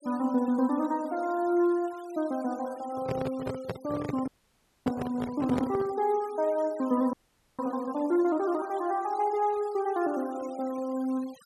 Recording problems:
denoising artefacts; signal-to-artefact ratio 22 dB
handling noise; from 3 to 6 s; peak 0 dB vs average level
frozen audio; at 4.5 s for 0.5 s and at 7 s

